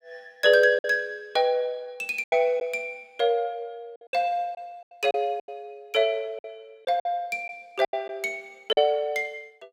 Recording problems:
packet loss; 7% of the sound replaced, filled with silence

